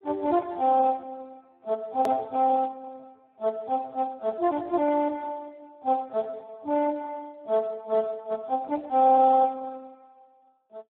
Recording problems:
telephone audio; 280 Hz to 2 kHz, Speex
edit click; at 2 s

